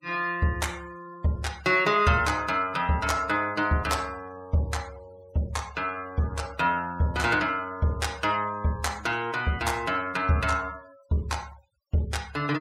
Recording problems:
denoising artefacts; signal-to-artefact ratio 22 dB

